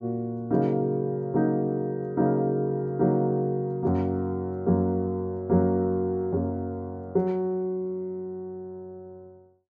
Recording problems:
none

